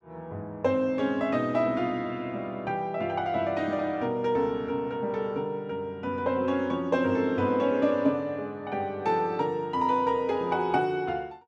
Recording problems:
none

